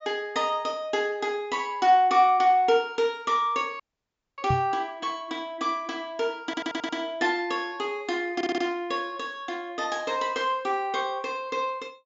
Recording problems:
treble missing; nothing above 8 kHz
audio cutting out; at 4 s for 0.5 s
knock on the microphone; at 4.5 s; peak +2 dB vs average level
audio stuttering; at 6.5 s and at 8.5 s

